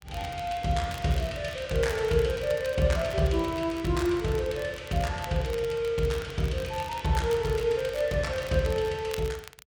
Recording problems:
crackling; vinyl, SNR 19 dB

